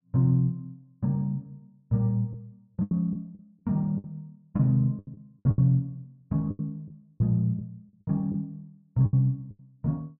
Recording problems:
lost packets; 10% of the sound replaced, filled with the last packet

